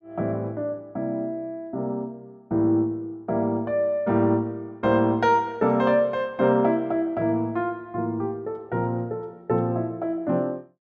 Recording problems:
none

